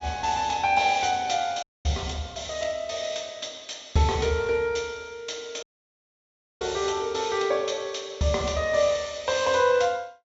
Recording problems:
treble cut off; nothing above 8 kHz
dropout; at 1.5 s and at 5.5 s for 1 s

